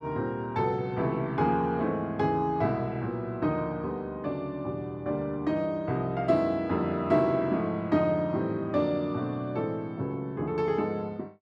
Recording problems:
none

